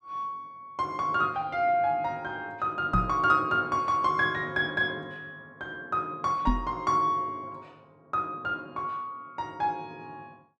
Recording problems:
knock on the microphone; at 3 s and at 6.5 s; peak +5 dB vs average level

